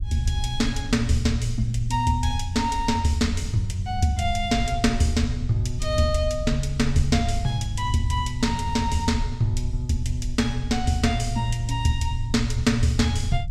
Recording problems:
low-frequency rumble; below 74 Hz, SNR 7 dB

